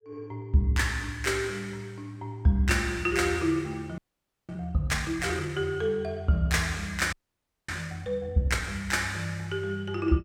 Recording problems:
frozen audio; at 4 s for 0.5 s and at 7 s for 0.5 s

